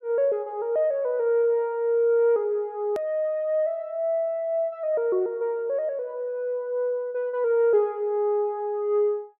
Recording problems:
click at an edit; at 3 s

